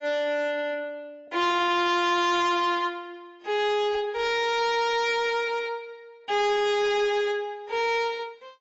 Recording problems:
codec artefacts; AAC, log-spectral distance 2 dB, nothing above 7.3 kHz
distortion; hard clipping, signal-to-distortion ratio 10 dB

